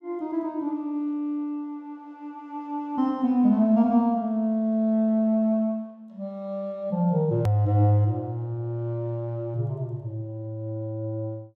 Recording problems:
hard cut with a click; at 7.5 s

